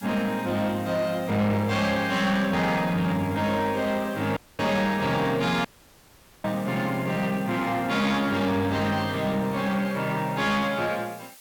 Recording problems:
distorted audio; soft clipping, signal-to-distortion ratio 11 dB
background hiss; slope +2 dB per octave, SNR 22 dB
dropout; at 4.5 s and at 5.5 s for 1 s

